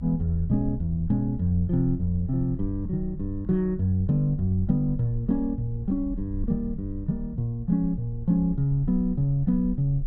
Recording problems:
rumble; below 60 Hz, SNR 13 dB

